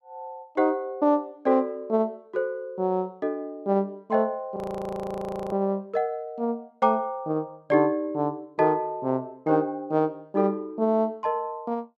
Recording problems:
audio freezing; at 4.5 s for 1 s

